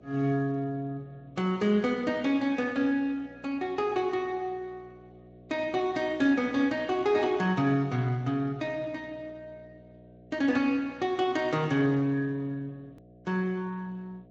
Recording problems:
lossy compression; Vorbis, then Speex, log-spectral distance 2 dB
mains hum; 60 Hz, harmonics up to 720 Hz, SNR 25 dB
hard cut with a click; at 13 s

